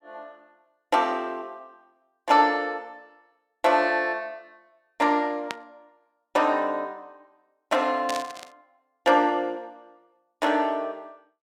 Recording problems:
burst of static; at 5.5 s and at 8 s; peak -3 dB vs average level

